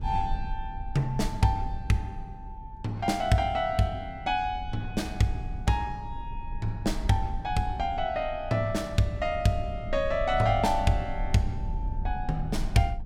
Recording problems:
low-frequency rumble; below 64 Hz, SNR 10 dB

